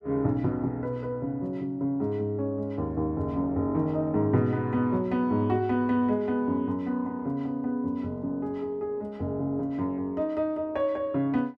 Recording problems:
none

